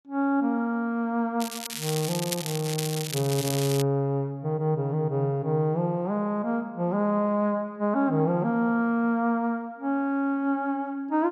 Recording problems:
crackle; from 1.5 to 4 s; loose cable, SNR 6 dB

